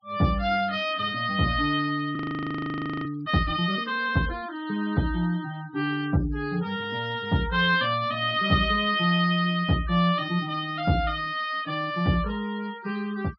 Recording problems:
treble cut off; nothing above 5.5 kHz
noise reduction artefacts; signal-to-artefact ratio 22 dB
frozen audio; at 2 s for 1 s

